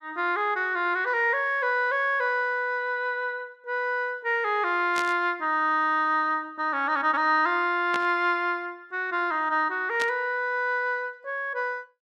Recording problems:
static burst; at 5 s, at 8 s and at 10 s; peak -3 dB vs average level

